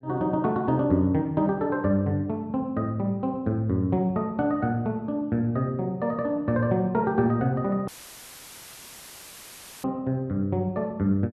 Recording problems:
dropout; at 8 s for 2 s; filled with static

